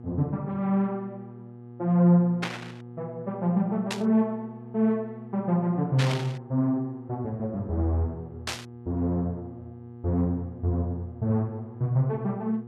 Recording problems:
hum; 60 Hz, harmonics up to 840 Hz, SNR 16 dB
static burst; 4 times, first at 2.5 s; peak 0 dB vs average level

